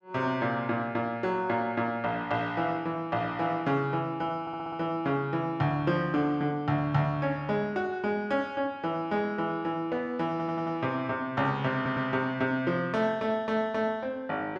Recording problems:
audio stuttering; at 4.5 s, at 10 s and at 12 s

